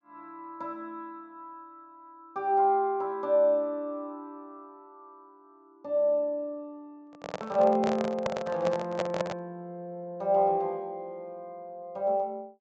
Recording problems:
treble cut off; nothing above 8 kHz
microphone handling noise; from 7 to 9.5 s; peak +2 dB vs average level

